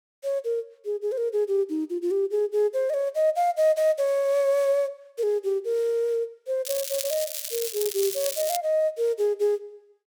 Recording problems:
crackle; from 6.5 to 8.5 s; loose cable, SNR 5 dB

